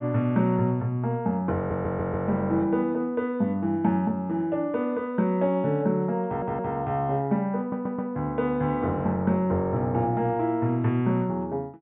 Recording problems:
low-pass filter; nothing above 4 kHz
stutter; at 1.5 s, at 6.5 s and at 7.5 s

